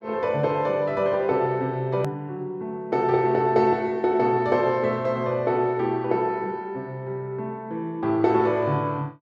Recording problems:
edit click; at 2 s

